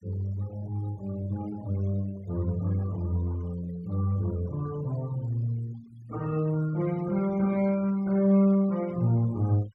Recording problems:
noise reduction artefacts; signal-to-artefact ratio 23 dB

